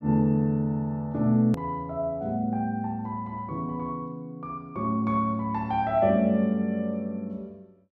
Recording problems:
hard cut with a click; at 1.5 s

